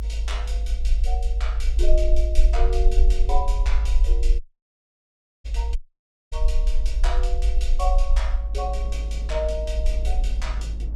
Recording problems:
rumble; below 52 Hz, SNR -8 dB
wind noise; below 270 Hz, SNR 15 dB
dropout; at 4.5 s for 1 s and at 6 s for 0.5 s

